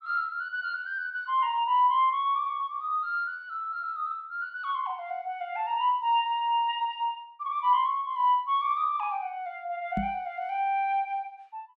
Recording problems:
microphone bump; at 10 s; peak 0 dB vs average level

